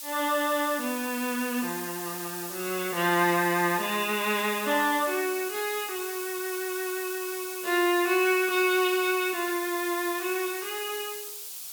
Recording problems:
hiss; SNR 8 dB

